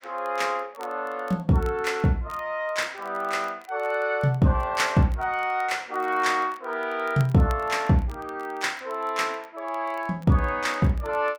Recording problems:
crackle; vinyl, SNR 28 dB

